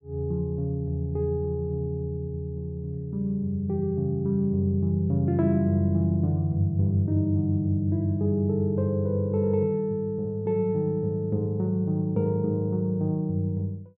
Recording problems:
none

